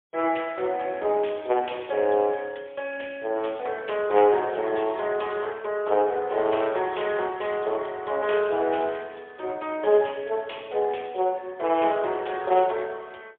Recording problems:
telephone audio; 340 Hz to 3.5 kHz, AMR-NB, then MP3

